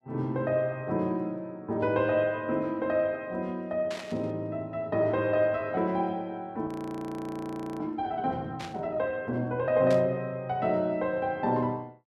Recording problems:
burst of static; at 4 s, at 8.5 s and at 10 s; peak -7 dB vs average level
audio freezing; at 6.5 s for 1 s

